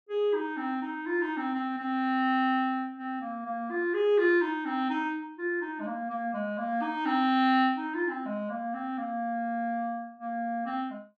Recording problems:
none

